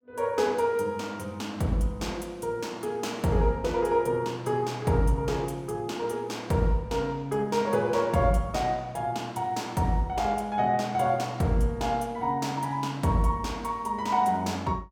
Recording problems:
none

